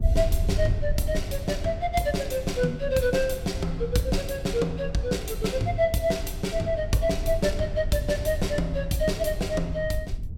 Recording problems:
low-frequency rumble; below 82 Hz, SNR 7 dB

